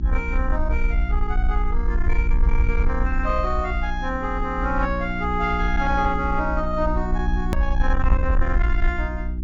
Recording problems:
low-pass filter; nothing above 7.1 kHz
distortion; soft clipping, signal-to-distortion ratio 12 dB
electrical hum; 60 Hz, harmonics up to 360 Hz, SNR 7 dB
low-frequency rumble; below 58 Hz, SNR 0 dB
edit click; at 7.5 s

